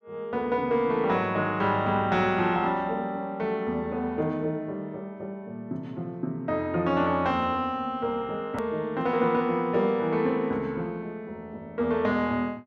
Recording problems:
click at an edit; at 8.5 s

